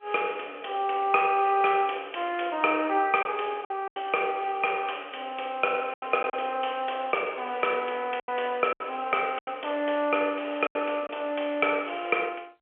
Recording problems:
telephone audio; 320 Hz to 3.2 kHz, G.711
packet loss; 5% of the sound replaced, filled with silence

